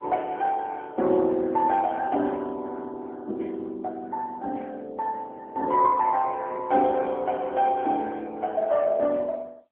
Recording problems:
telephone audio; 240 Hz to 3.6 kHz, AMR-NB

